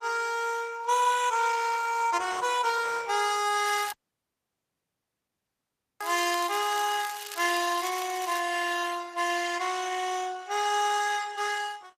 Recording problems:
lossy codec; Opus, log-spectral distance 7 dB, nothing above 14.7 kHz
crackling; from 3.5 to 8.5 s; loose cable, SNR 13 dB
audio cutting out; at 4 s for 2 s

